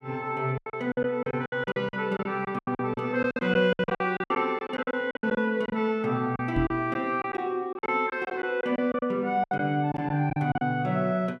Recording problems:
packet loss; 16% of the sound replaced, filled with silence
microphone thump; at 6.5 s; peak +2 dB vs average level

